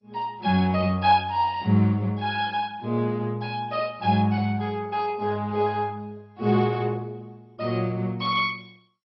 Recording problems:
codec artefacts; MP2, log-spectral distance 3 dB, nothing above 4.6 kHz

